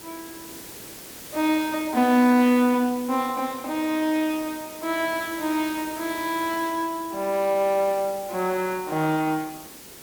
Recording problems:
background hiss; SNR 15 dB

